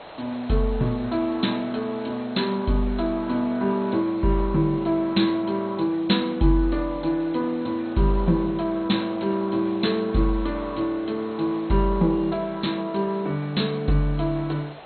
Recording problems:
codec artefacts; MP2, log-spectral distance 7 dB, nothing above 4.2 kHz
hiss; SNR 18 dB

